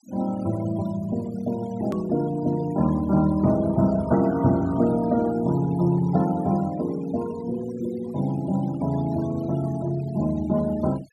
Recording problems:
noise reduction artefacts; signal-to-artefact ratio 20 dB
click at an edit; at 2 s

